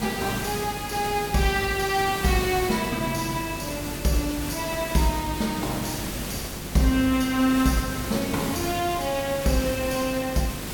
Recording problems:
mains hum; 50 Hz, harmonics up to 550 Hz, SNR 14 dB
hiss; slope -3 dB per octave, SNR 8 dB

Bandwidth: 17.5 kHz